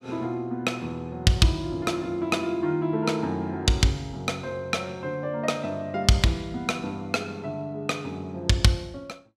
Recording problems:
none

